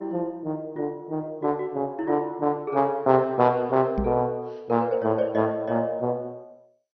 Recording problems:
lossy compression; MP2, log-spectral distance 2 dB, nothing above 5.8 kHz
microphone bump; at 4 s; peak +1 dB vs average level

